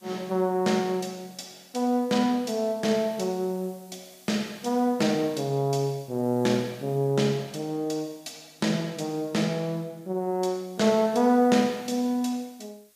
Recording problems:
background hiss; slope +1 dB per octave, SNR 27 dB

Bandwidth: 15 kHz